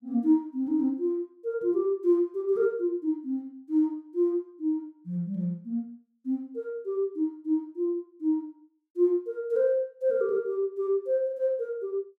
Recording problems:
none

